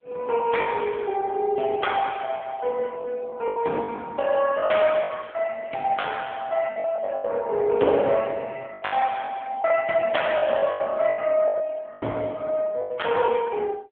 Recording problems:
telephone audio; 240 Hz to 3.5 kHz, AMR-NB
packet loss; 10% of the sound replaced, filled with the last packet

